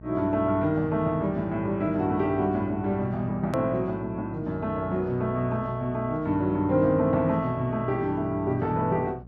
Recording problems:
treble missing; nothing above 8 kHz
electrical hum; 60 Hz, harmonics up to 840 Hz, SNR 19 dB
click at an edit; at 3.5 s

